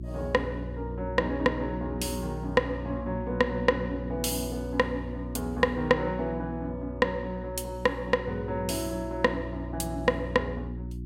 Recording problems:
hum; 60 Hz, harmonics up to 360 Hz, SNR 9 dB

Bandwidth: 16 kHz